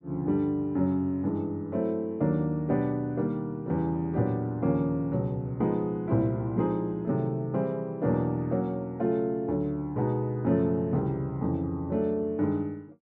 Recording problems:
none

